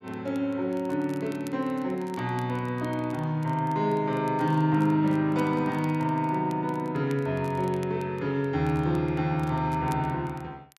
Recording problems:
crackling; vinyl, SNR 27 dB

